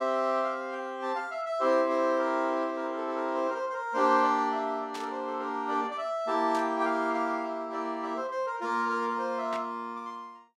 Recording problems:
static burst; at 5 s, at 6.5 s and at 9.5 s; peak -8 dB vs average level

